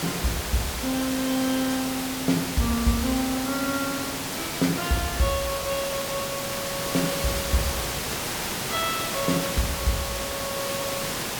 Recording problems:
hiss; slope -2 dB per octave, SNR 1 dB

